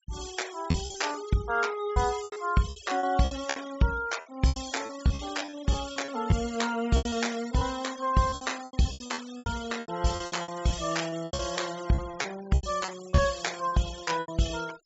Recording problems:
low-pass filter; nothing above 8 kHz
denoising artefacts; signal-to-artefact ratio 15 dB
lost packets; 15% of the sound replaced, filled with repeated pitch periods

